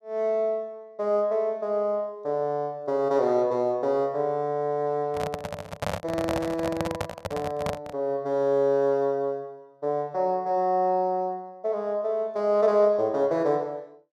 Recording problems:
handling noise; from 5 to 8 s; peak +1 dB vs average level

